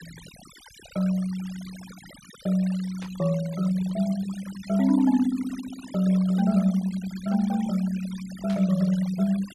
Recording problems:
noise reduction artefacts; signal-to-artefact ratio 18 dB
burst of static; at 3 s and at 8.5 s; peak -13 dB vs average level

